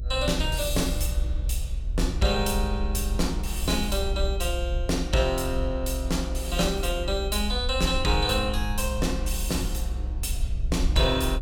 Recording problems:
hum; 60 Hz, harmonics up to 660 Hz, SNR 19 dB
rumble; below 62 Hz, SNR 3 dB

